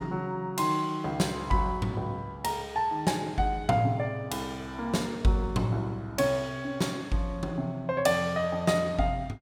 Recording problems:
none

